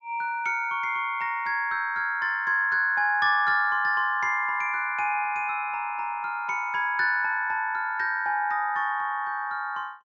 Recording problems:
low-pass filter; nothing above 8 kHz

